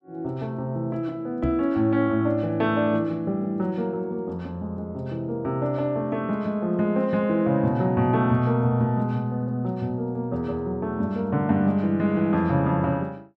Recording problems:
microphone bump; at 1.5 s; peak +1 dB vs average level

